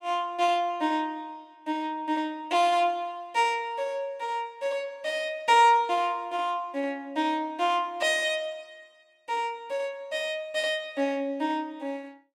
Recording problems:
none

